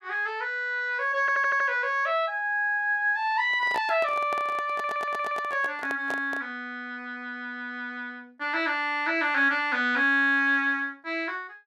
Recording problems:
stutter; at 1 s and at 4.5 s
handling noise; from 3.5 to 6.5 s; peak -5 dB vs average level

